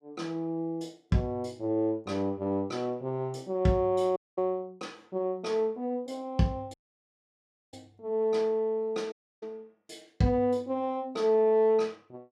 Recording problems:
dropout; at 4 s, at 6.5 s for 1 s and at 9 s

